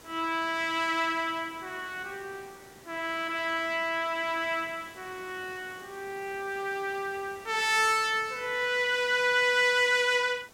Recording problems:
background hiss; slope -4 dB per octave, SNR 23 dB

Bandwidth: 16.5 kHz